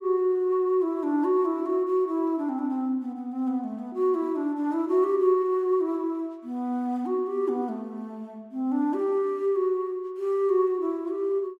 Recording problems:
none

